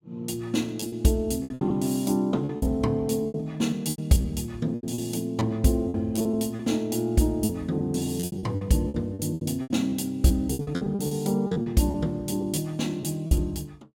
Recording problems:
lost packets; 14% of the sound replaced, filled with repeated pitch periods

